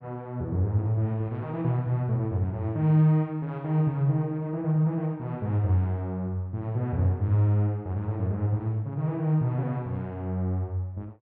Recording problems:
none

